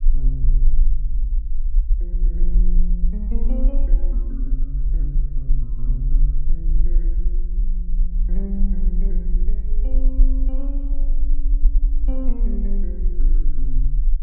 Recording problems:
rumble; below 38 Hz, strongest tone 26 Hz, SNR -12 dB

